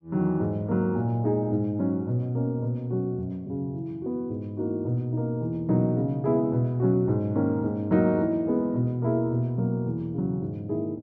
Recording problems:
none

